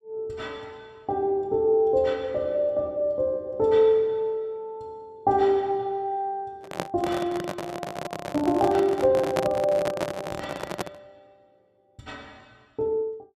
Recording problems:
microphone handling noise; from 6.5 to 11 s; peak +3 dB vs average level

